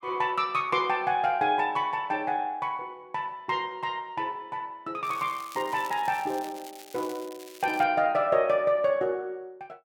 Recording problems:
crackle; from 5 to 8 s; loose cable, SNR 19 dB

